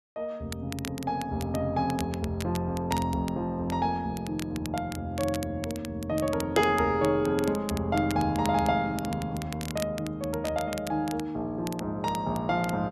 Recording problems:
crackle; vinyl, SNR 14 dB

